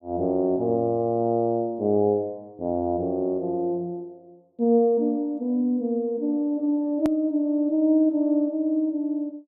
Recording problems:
hard cut with a click; at 7 s

